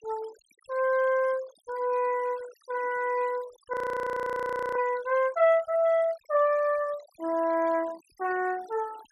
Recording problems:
denoising artefacts; signal-to-artefact ratio 24 dB
audio freezing; at 3.5 s for 1 s

